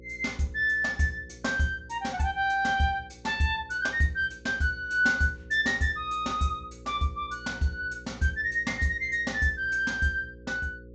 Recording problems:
treble missing; nothing above 8 kHz
mains hum; 60 Hz, harmonics up to 540 Hz, SNR 22 dB

